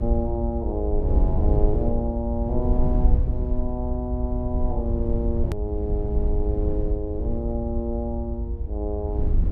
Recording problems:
rumble; below 78 Hz, SNR -3 dB
hard cut with a click; at 5.5 s

